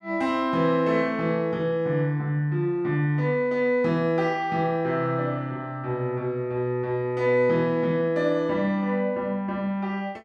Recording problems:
none

